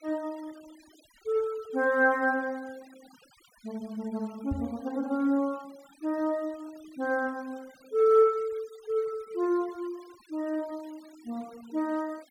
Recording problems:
noise reduction artefacts; signal-to-artefact ratio 26 dB
knock on the microphone; at 4.5 s; peak -1 dB vs average level

